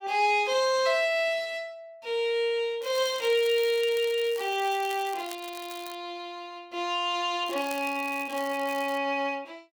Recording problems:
crackle; from 3 to 6 s and from 7.5 to 9 s; loose cable, SNR 17 dB

